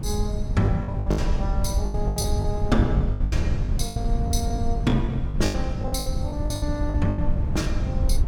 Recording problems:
rumble; below 120 Hz, SNR 12 dB
wind noise; below 100 Hz, SNR -2 dB
lost packets; 17% of the sound replaced, filled with the last packet

